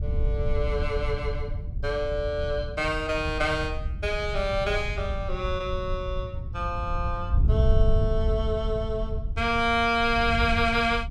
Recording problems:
wind noise; below 86 Hz, SNR 3 dB

